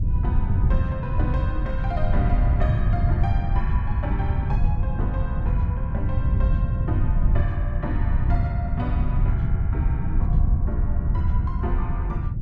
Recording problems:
wind noise; below 110 Hz, SNR -10 dB

